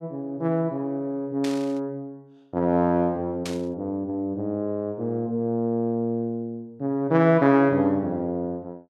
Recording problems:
static burst; at 1.5 s and at 3.5 s; peak -5 dB vs average level

